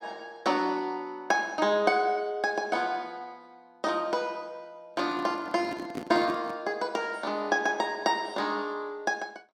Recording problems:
microphone handling noise; from 5 to 6.5 s; peak -2 dB vs average level

